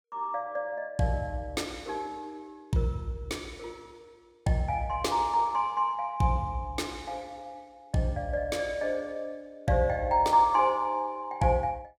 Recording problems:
none

